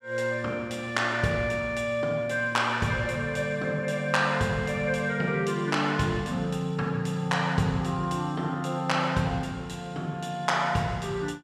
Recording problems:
none

